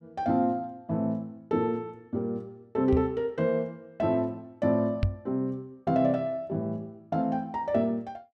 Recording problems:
knock on the microphone; at 3 s and at 5 s; peak +6 dB vs average level

